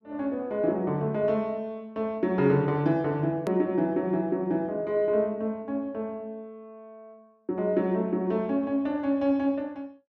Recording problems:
edit click; at 3.5 s

